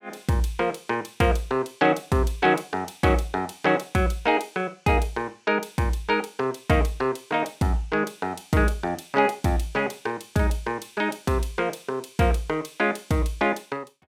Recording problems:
none

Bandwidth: 16 kHz